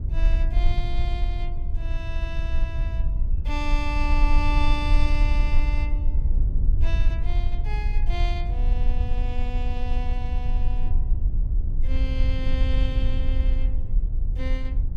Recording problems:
rumble; below 52 Hz, SNR -8 dB

